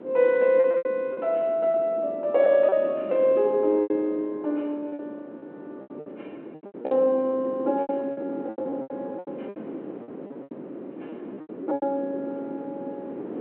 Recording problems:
telephone audio; 260 Hz to 3.4 kHz, G.726
wind on the microphone; below 460 Hz, SNR 14 dB
packet loss; 13% of the sound replaced, filled with repeated pitch periods

